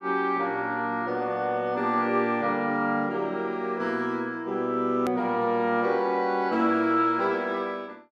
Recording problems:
click at an edit; at 5 s

